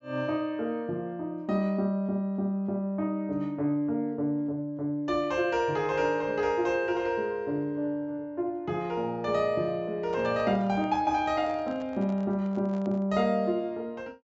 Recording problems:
treble missing; nothing above 8 kHz
handling noise; from 10 to 13 s; peak -11 dB vs average level

